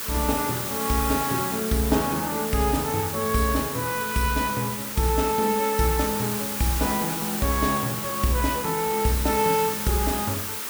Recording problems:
background hiss; SNR 4 dB

